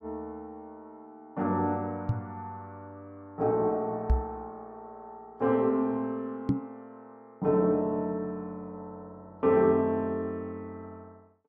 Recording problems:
microphone thump; at 2 s, at 4 s and at 6.5 s; peak +7 dB vs average level

